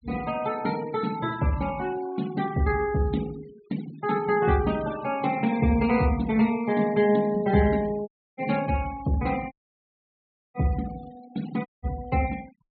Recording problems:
low-pass filter; nothing above 4.5 kHz
denoising artefacts; signal-to-artefact ratio 19 dB
dropout; at 8 s, at 9.5 s for 1 s and at 12 s

